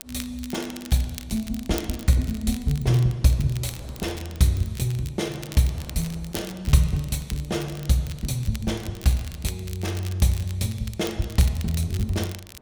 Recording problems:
wind noise; below 670 Hz, SNR 27 dB
crackling; vinyl, SNR 16 dB

